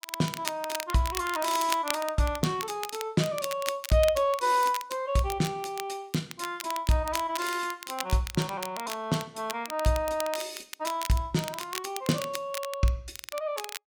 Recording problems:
crackle; vinyl, SNR 9 dB

